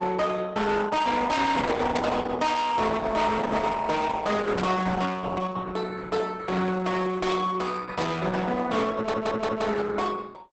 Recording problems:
lossy codec; Opus, log-spectral distance 4 dB, nothing above 8 kHz
distorted audio; hard clipping, signal-to-distortion ratio 8 dB
static burst; at 2 s, at 4.5 s and at 8 s; peak -3 dB vs average level
stutter; at 9 s

